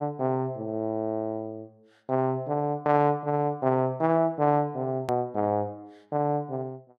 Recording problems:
click at an edit; at 5 s

